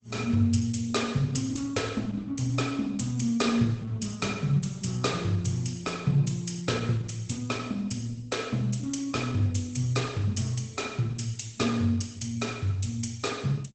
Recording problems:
lossy compression; Opus, log-spectral distance 4 dB, nothing above 8 kHz

